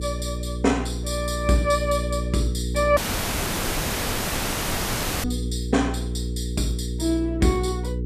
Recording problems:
hum; 60 Hz, harmonics up to 480 Hz, SNR 4 dB
audio cutting out; at 3 s for 2.5 s

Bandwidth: 14.5 kHz